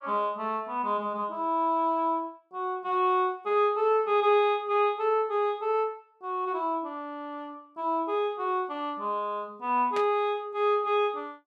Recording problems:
burst of static; at 10 s; peak -6 dB vs average level

